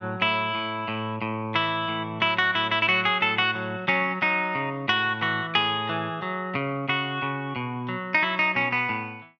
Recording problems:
none

